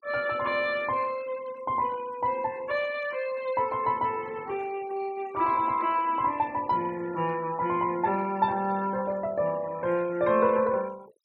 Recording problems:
noise reduction artefacts; signal-to-artefact ratio 23 dB

